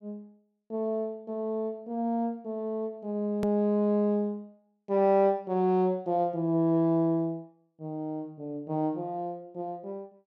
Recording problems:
edit click; at 3.5 s

